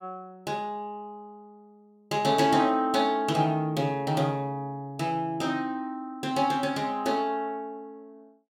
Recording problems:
none

